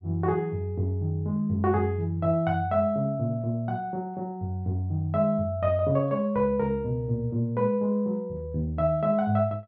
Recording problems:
none

